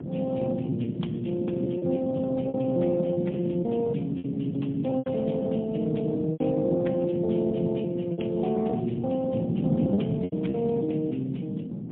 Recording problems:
telephone audio; 86 Hz to 3.5 kHz, AMR-NB, then MP3
wind on the microphone; below 270 Hz, SNR 3 dB
lost packets; 7% of the sound replaced, filled with repeated pitch periods

